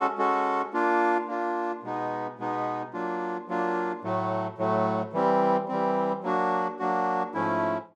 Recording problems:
none

